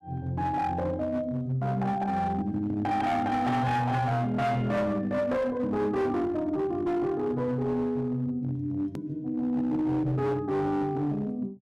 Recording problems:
distorted audio; hard clipping, uneven, signal-to-distortion ratio 11 dB
hard cut with a click; at 9 s

